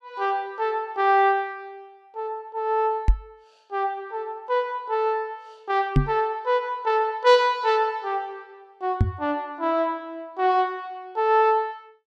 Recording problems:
microphone bump; at 3 s, at 6 s and at 9 s; peak +8 dB vs average level

